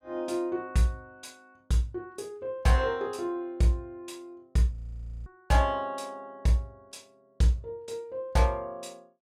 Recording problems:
audio freezing; at 5 s for 0.5 s

